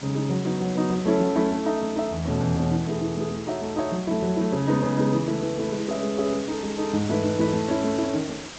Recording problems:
lossy codec; G.722, log-spectral distance 9 dB
hiss; slope -2 dB per octave, SNR 14 dB

